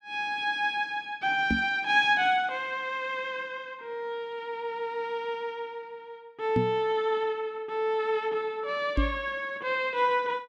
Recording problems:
microphone thump; at 1.5 s, at 6.5 s and at 9 s; peak +5 dB vs average level

